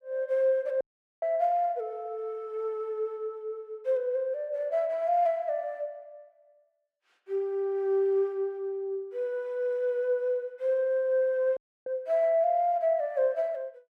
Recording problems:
audio cutting out; at 1 s and at 12 s

